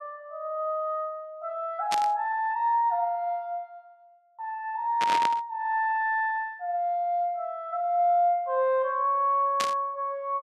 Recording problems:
burst of static; at 2 s, at 5 s and at 9.5 s; peak +1 dB vs average level

